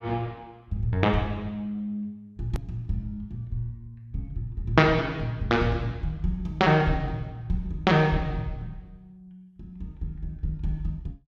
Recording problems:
hard cut with a click; at 2.5 s

